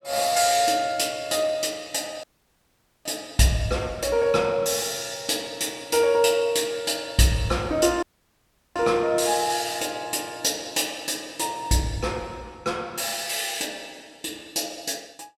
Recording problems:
audio cutting out; at 2 s for 1 s and at 8 s for 0.5 s

